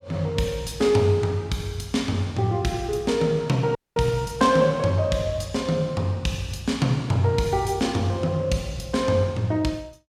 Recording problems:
audio cutting out; at 4 s

